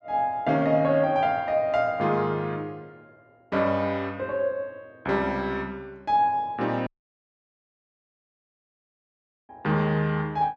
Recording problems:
dropout; at 7 s for 2.5 s

